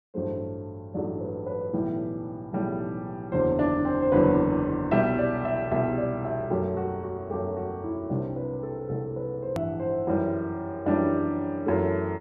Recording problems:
hard cut with a click; at 9.5 s

